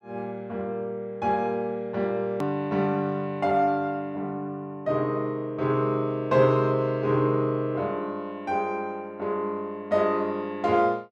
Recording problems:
click at an edit; at 2.5 s

